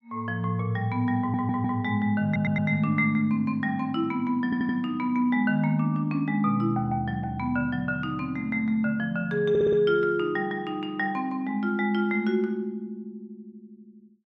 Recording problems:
audio stuttering; 4 times, first at 1 s

